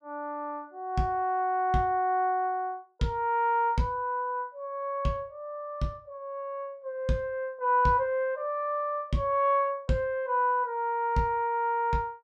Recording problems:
none

